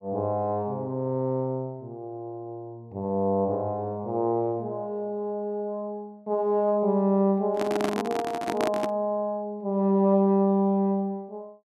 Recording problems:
handling noise; from 7.5 to 9 s; peak +2 dB vs average level

